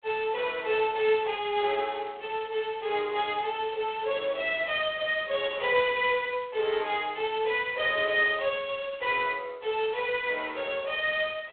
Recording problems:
phone line; 340 Hz to 3.4 kHz, G.726
crackle; from 1 to 3.5 s, from 3.5 to 6.5 s and from 6.5 to 9 s; loose cable, SNR 27 dB

